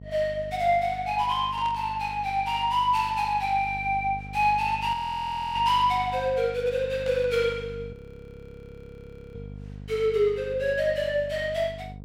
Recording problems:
hum; 50 Hz, harmonics up to 700 Hz, SNR 16 dB
static burst; at 1.5 s and at 7 s; peak -12 dB vs average level
audio freezing; at 5 s for 0.5 s and at 8 s for 1.5 s

